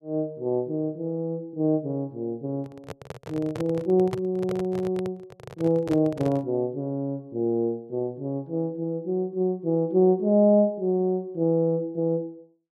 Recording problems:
microphone handling noise; from 2.5 to 6.5 s; peak -3 dB vs average level

